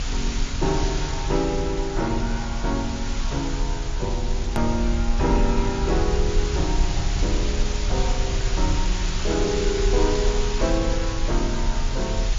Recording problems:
codec artefacts; G.722, then MP3, log-spectral distance 8 dB, nothing above 13.1 kHz
hum; 50 Hz, harmonics up to 450 Hz, SNR 17 dB
background hiss; slope 0 dB per octave, SNR 6 dB
low-frequency rumble; below 56 Hz, SNR 1 dB
edit click; at 4.5 s

